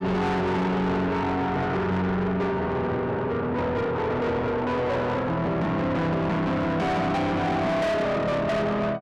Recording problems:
distortion; soft clipping, signal-to-distortion ratio 6 dB

